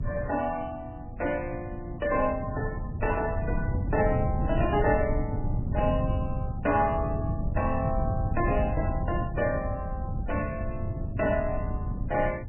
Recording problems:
lossy compression; MP3, log-spectral distance 3 dB, nothing above 2.9 kHz
electrical hum; 60 Hz, harmonics up to 600 Hz, SNR 18 dB
wind noise; below 140 Hz, SNR 2 dB

